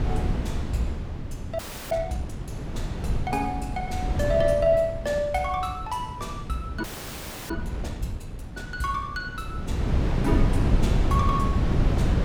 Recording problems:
wind noise; below 180 Hz, SNR 0 dB
frozen audio; at 1.5 s and at 7 s for 0.5 s

